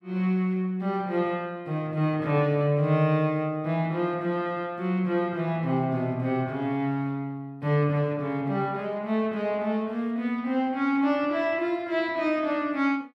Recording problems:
none

